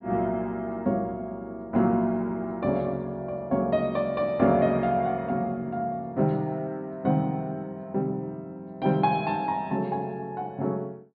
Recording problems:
low-pass filter; nothing above 4.9 kHz

